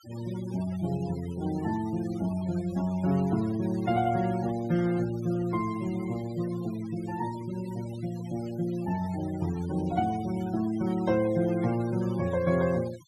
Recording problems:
denoising artefacts; signal-to-artefact ratio 17 dB

